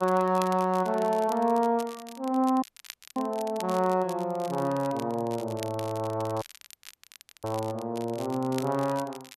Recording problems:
crackling; vinyl, SNR 18 dB
dropout; at 2.5 s for 0.5 s and at 6.5 s for 1 s

